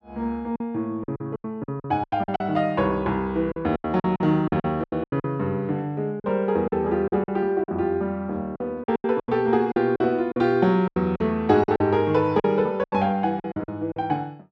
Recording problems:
lost packets; 14% of the sound replaced, filled with silence

